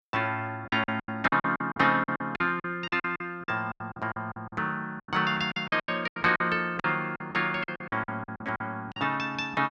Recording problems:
lost packets; 17% of the sound replaced, filled with silence

